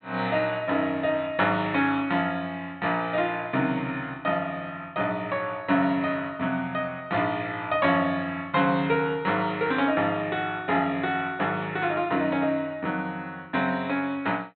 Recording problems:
treble missing; nothing above 4.1 kHz

